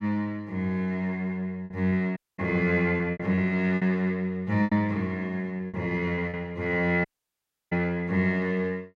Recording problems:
packet loss; 6% of the sound replaced, filled with repeated pitch periods
audio cutting out; at 2 s and at 7 s for 0.5 s

